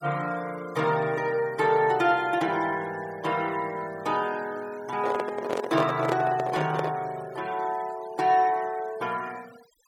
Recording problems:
denoising artefacts; signal-to-artefact ratio 20 dB
microphone handling noise; from 5 to 7 s; peak +1 dB vs average level

